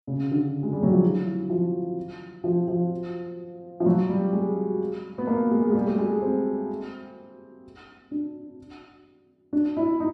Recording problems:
none

